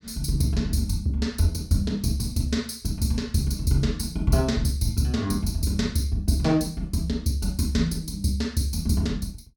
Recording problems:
none

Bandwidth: 17.5 kHz